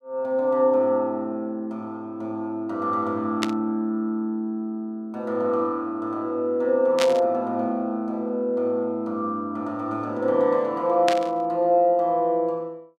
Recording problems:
static burst; at 3.5 s, at 7 s and at 11 s; peak +3 dB vs average level

